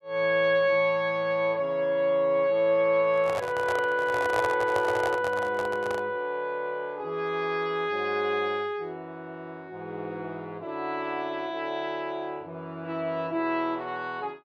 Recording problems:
handling noise; from 3 to 6 s; peak 0 dB vs average level

